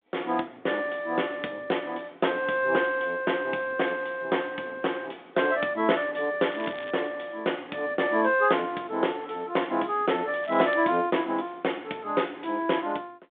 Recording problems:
phone line; 220 Hz to 3.6 kHz, G.726
crackle; at 6.5 s and at 10 s; loose cable, SNR 19 dB

